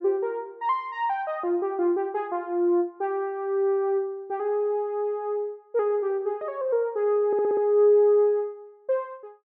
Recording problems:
audio stuttering; at 7.5 s

